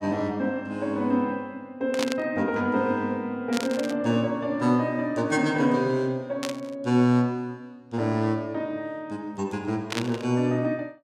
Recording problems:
burst of static; 4 times, first at 2 s; peak +1 dB vs average level

